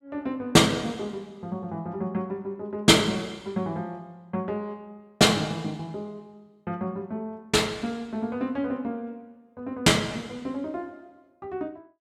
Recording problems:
none

